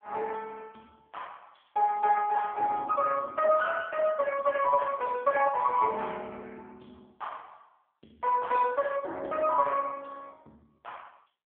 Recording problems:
phone line; 370 Hz to 3 kHz, AMR-NB

